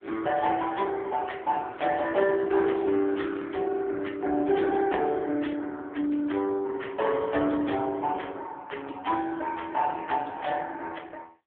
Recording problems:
phone line; 220 Hz to 3.5 kHz, AMR-NB

